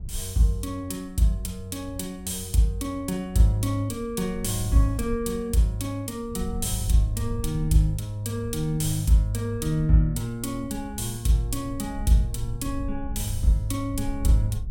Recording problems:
wind on the microphone; below 76 Hz, SNR 12 dB

